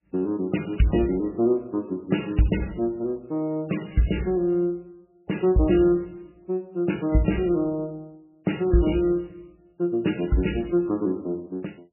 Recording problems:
lossy compression; MP3, log-spectral distance 4 dB, nothing above 2.9 kHz

